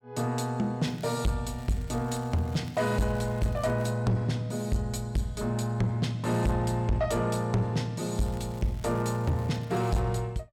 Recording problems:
distorted audio; soft clipping, signal-to-distortion ratio 7 dB
crackling; at 1 s, from 1.5 to 4 s and from 8.5 to 10 s; loose cable, SNR 25 dB

